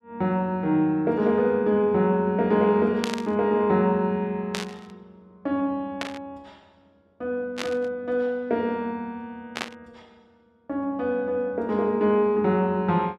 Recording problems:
burst of static; 5 times, first at 3 s; peak -1 dB vs average level

